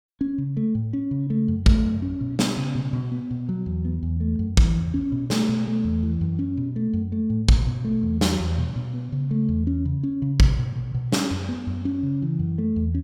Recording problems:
none

